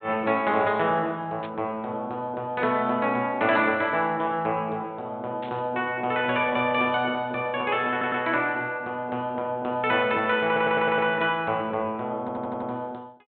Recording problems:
low-pass filter; nothing above 4 kHz
static burst; at 1.5 s and at 5.5 s; peak -12 dB vs average level
stutter; at 8 s, at 10 s and at 12 s

